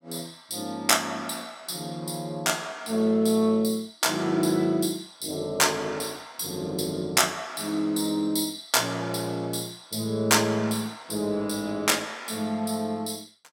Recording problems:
none

